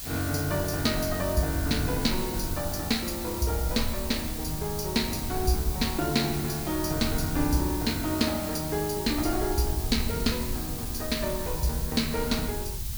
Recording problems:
background hiss; slope +3 dB per octave, SNR 6 dB
rumble; below 86 Hz, SNR 9 dB

